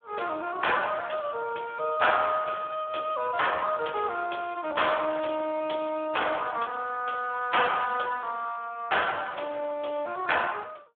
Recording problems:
telephone audio; 260 Hz to 3.4 kHz, Speex

